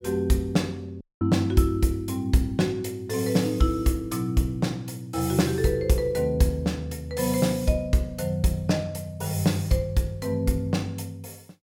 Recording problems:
dropout; at 1 s

